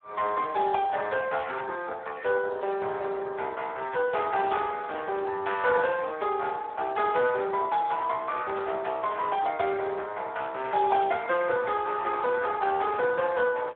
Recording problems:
telephone audio; 320 Hz to 3.9 kHz, Speex
static burst; 5 times, first at 1.5 s; peak -12 dB vs average level

